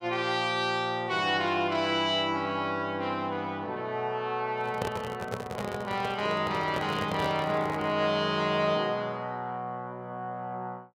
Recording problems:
handling noise; from 4.5 to 8 s; peak +1 dB vs average level

